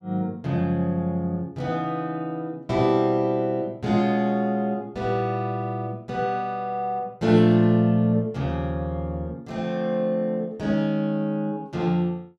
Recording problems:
none

